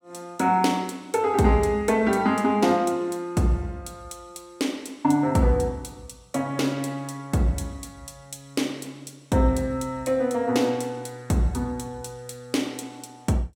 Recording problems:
none

